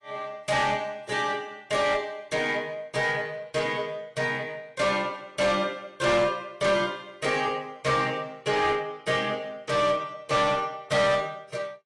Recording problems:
codec artefacts; AAC, log-spectral distance 3 dB, nothing above 10.4 kHz
distortion; hard clipping, uneven, signal-to-distortion ratio 10 dB

